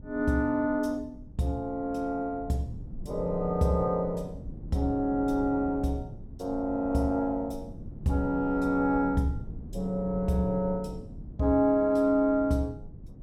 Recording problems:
wind noise; below 170 Hz, SNR 15 dB

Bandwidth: 16.5 kHz